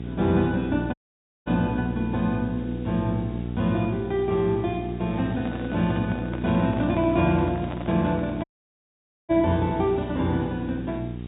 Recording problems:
treble missing; nothing above 4 kHz
electrical hum; 60 Hz, harmonics up to 780 Hz, SNR 8 dB
hiss; SNR 27 dB
dropout; at 1 s for 0.5 s and at 8.5 s for 1 s
handling noise; from 5 to 9.5 s; peak -7 dB vs average level

